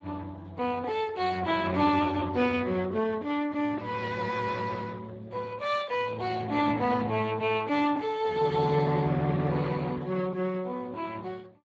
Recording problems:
codec artefacts; Speex, log-spectral distance 4 dB

